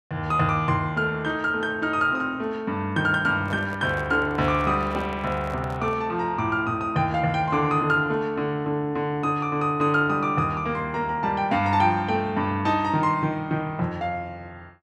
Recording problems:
microphone handling noise; from 3.5 to 6 s; peak -10 dB vs average level

